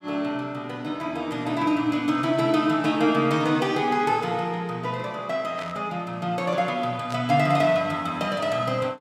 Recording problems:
static burst; at 5.5 s and at 7 s; peak -10 dB vs average level

